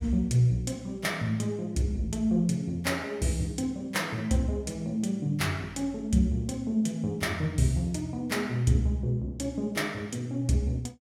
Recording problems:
none

